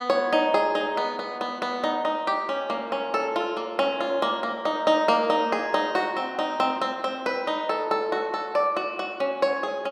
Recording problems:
none

